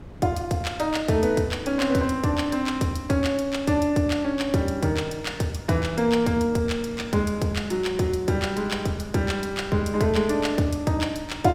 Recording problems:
wind noise; below 280 Hz, SNR 19 dB

